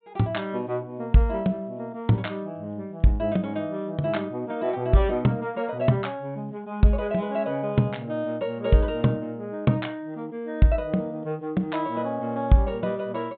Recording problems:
low-pass filter; nothing above 4 kHz

